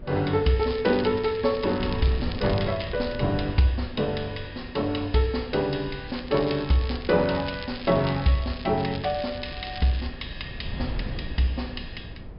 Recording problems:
treble missing; nothing above 5.5 kHz
hum; 60 Hz, harmonics up to 660 Hz, SNR 26 dB
wind on the microphone; below 150 Hz, SNR 13 dB
crackling; from 0.5 to 3 s, from 6 to 8.5 s and from 9 to 10 s; loose cable, SNR 16 dB

